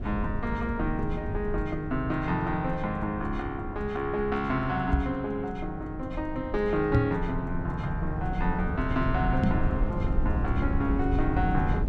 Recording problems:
rumble; below 120 Hz, SNR 4 dB
microphone bump; at 5 s, at 7 s and at 9.5 s; peak +9 dB vs average level

